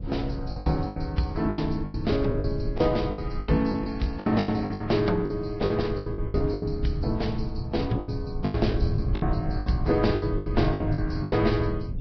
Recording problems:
lossy compression; Vorbis, log-spectral distance 3 dB, nothing above 5.3 kHz
low-frequency rumble; below 140 Hz, SNR 6 dB
packet loss; 16% of the sound replaced, filled with the last packet

